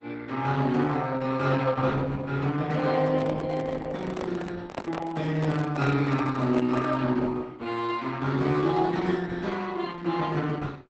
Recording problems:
lossy codec; Opus, log-spectral distance 4 dB, nothing above 8 kHz
microphone handling noise; from 3 to 7 s; peak -1 dB vs average level

